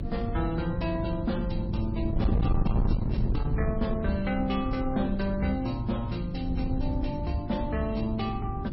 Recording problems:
lossy codec; MP3, log-spectral distance 2 dB, nothing above 5.5 kHz
distortion; soft clipping, signal-to-distortion ratio 11 dB
hum; 50 Hz, harmonics up to 350 Hz, SNR 7 dB
wind noise; below 140 Hz, SNR 2 dB

